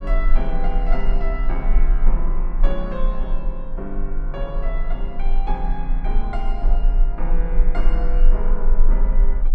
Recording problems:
low-frequency rumble; below 32 Hz, strongest tone 20 Hz, SNR -7 dB

